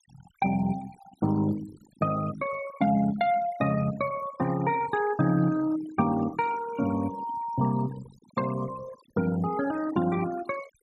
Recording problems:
noise reduction artefacts; signal-to-artefact ratio 16 dB

